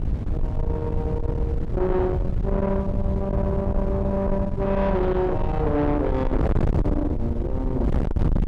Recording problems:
distorted audio; soft clipping, signal-to-distortion ratio 7 dB
wind on the microphone; below 190 Hz, SNR 1 dB

